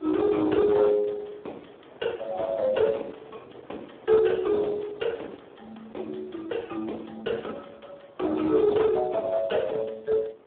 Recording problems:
telephone audio; 260 Hz to 3.7 kHz, Speex
distortion; soft clipping, signal-to-distortion ratio 13 dB
wind noise; below 840 Hz, SNR 24 dB

